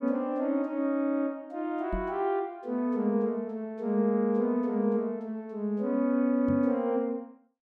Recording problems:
microphone thump; at 2 s and at 6.5 s; peak -2 dB vs average level

